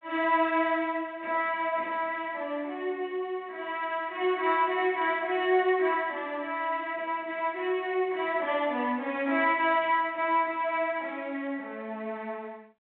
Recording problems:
telephone audio; 260 Hz to 3.9 kHz, G.726

